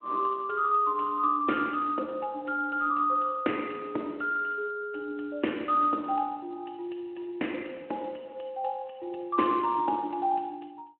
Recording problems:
telephone audio; 240 Hz to 3 kHz, Speex

